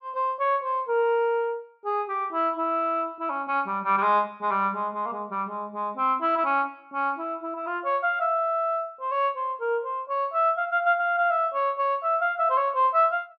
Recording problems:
none

